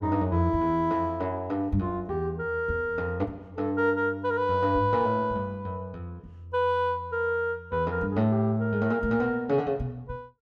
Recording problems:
none

